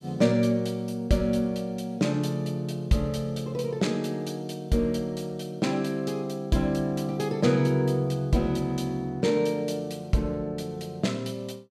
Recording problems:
none

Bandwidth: 14.5 kHz